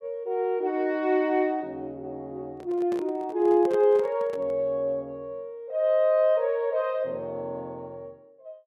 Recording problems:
handling noise; from 2.5 to 4.5 s; peak -8 dB vs average level

